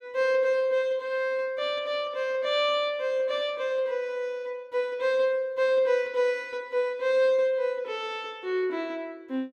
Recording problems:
none

